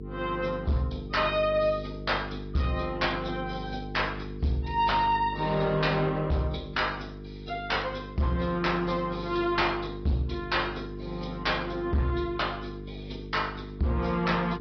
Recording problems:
treble missing; nothing above 5.3 kHz
lossy codec; AAC, log-spectral distance 3 dB
distorted audio; hard clipping, signal-to-distortion ratio 11 dB
electrical hum; 50 Hz, harmonics up to 450 Hz, SNR 11 dB

